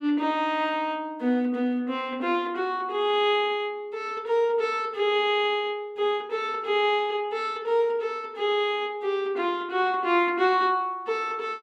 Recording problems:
none

